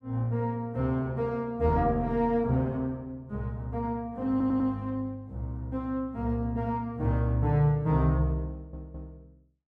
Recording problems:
stutter; at 4.5 s and at 8.5 s

